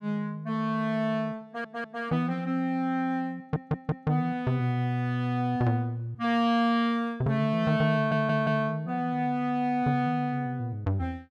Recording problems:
audio stuttering; at 1.5 s, at 3.5 s and at 8 s

